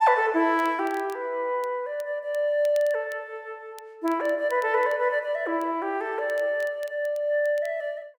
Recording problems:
crackle; vinyl, SNR 26 dB

